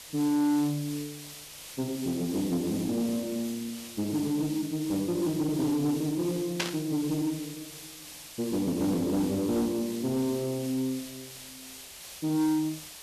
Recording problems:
distorted audio; soft clipping, signal-to-distortion ratio 10 dB
hiss; SNR 13 dB
burst of static; at 6.5 s; peak +5 dB vs average level

